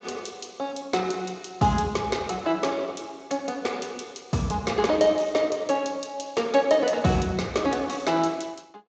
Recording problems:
codec artefacts; Speex, log-spectral distance 6 dB, nothing above 7.3 kHz

